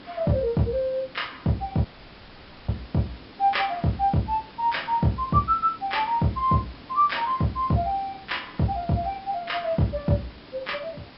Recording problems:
treble cut off; nothing above 5.3 kHz
hiss; slope -4 dB per octave, SNR 20 dB
dropout; at 2 s for 1 s

